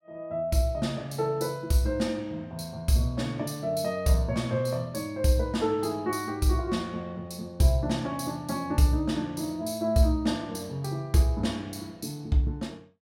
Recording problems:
none

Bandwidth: 16 kHz